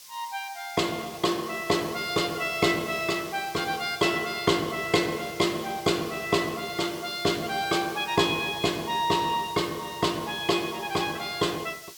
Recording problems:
hiss; slope +4 dB per octave, SNR 16 dB

